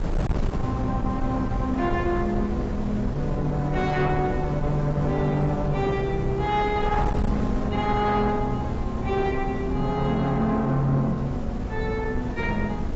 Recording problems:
lossy compression; AAC, log-spectral distance 2 dB, nothing above 7.1 kHz
distorted audio; soft clipping, signal-to-distortion ratio 12 dB
wind on the microphone; below 250 Hz, SNR 5 dB

